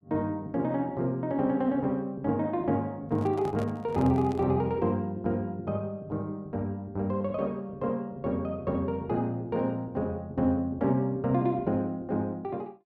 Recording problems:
handling noise; from 3 to 4.5 s; peak -8 dB vs average level

